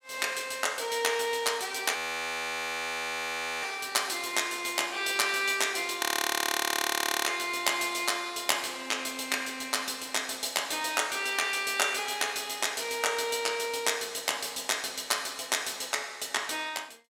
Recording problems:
audio freezing; at 2 s for 1.5 s and at 6 s for 1 s

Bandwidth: 16.5 kHz